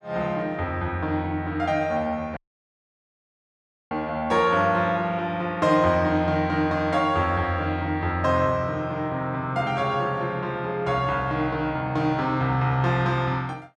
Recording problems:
dropout; at 2.5 s for 1.5 s

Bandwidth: 12 kHz